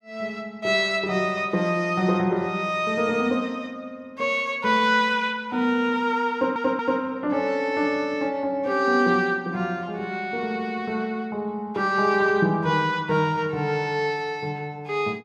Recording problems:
audio stuttering; at 6.5 s

